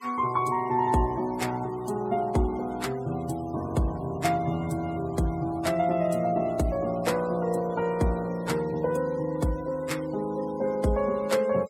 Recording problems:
denoising artefacts; signal-to-artefact ratio 21 dB

